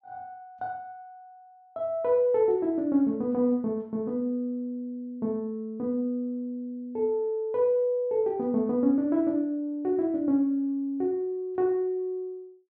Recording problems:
none

